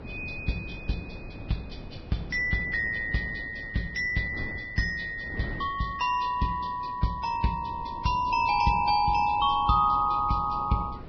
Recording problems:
lossy codec; Vorbis, log-spectral distance 3 dB, nothing above 5.3 kHz
wind on the microphone; below 320 Hz, SNR 15 dB

